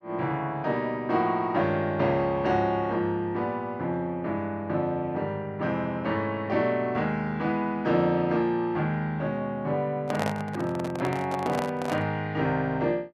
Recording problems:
microphone handling noise; from 10 to 12 s; peak +1 dB vs average level

